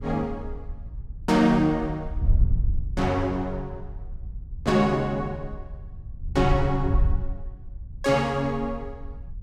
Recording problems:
wind noise; below 74 Hz, SNR 7 dB

